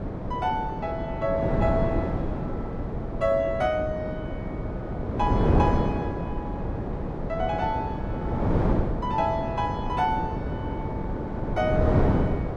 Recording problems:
wind noise; below 430 Hz, SNR -1 dB

